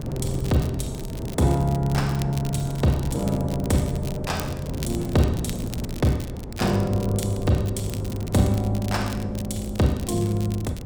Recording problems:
wind noise; below 290 Hz, SNR 8 dB
crackling; vinyl, SNR 16 dB

